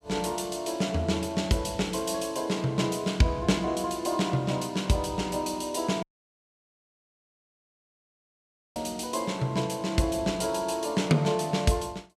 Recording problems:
dropout; at 6 s for 2.5 s

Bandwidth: 14.5 kHz